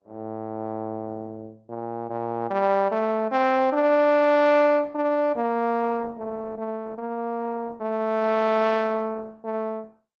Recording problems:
codec artefacts; Opus, log-spectral distance 2 dB

